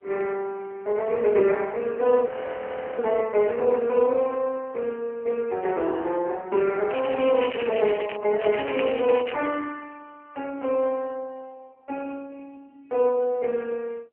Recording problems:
telephone audio; 300 Hz to 3 kHz, AMR-NB
audio freezing; at 2.5 s for 0.5 s
crackling; from 7 to 8 s and at 8.5 s; loose cable, SNR 14 dB

